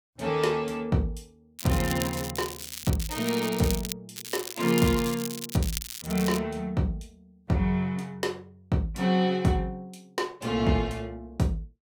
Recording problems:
crackle; from 1.5 to 4 s and from 4 to 6.5 s; loose cable, SNR 8 dB

